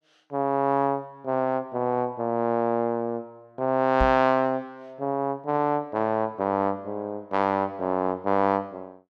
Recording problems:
microphone thump; at 4 s; peak +1 dB vs average level

